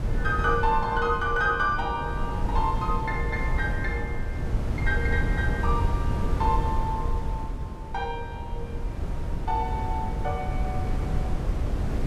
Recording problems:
wind noise; below 120 Hz, SNR 1 dB

